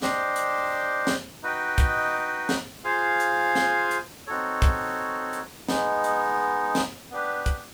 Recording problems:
hiss; slope -3 dB per octave, SNR 20 dB

